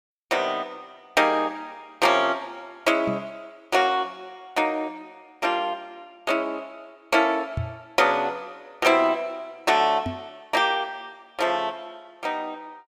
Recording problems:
microphone bump; at 3 s, at 7.5 s and at 10 s; peak -1 dB vs average level

